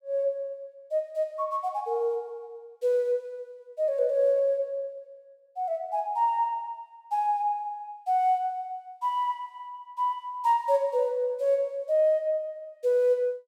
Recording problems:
none

